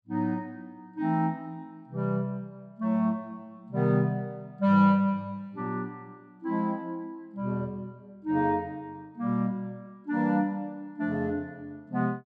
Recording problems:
none

